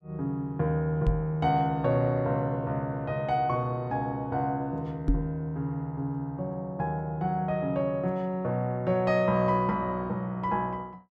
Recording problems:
microphone bump; at 1 s and at 5 s; peak +6 dB vs average level

